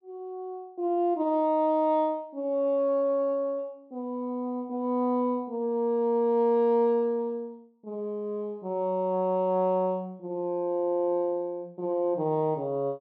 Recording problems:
none

